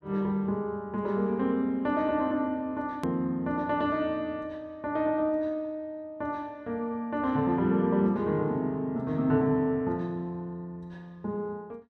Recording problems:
edit click; at 3 s

